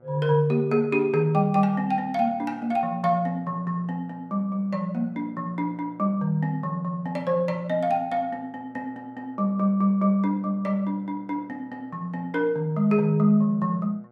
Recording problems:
electrical hum; 60 Hz, harmonics up to 1.6 kHz, SNR 28 dB

